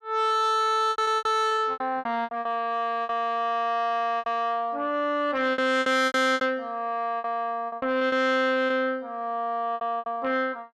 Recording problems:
distortion; soft clipping, signal-to-distortion ratio 10 dB
packet loss; 13% of the sound replaced, filled with repeated pitch periods

